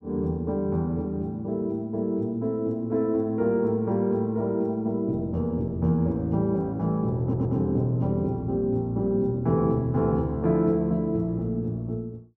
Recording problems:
audio stuttering; at 7 s

